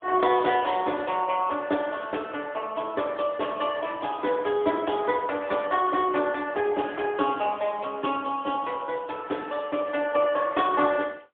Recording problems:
telephone audio; 240 Hz to 3.5 kHz, AMR-NB, then MP3

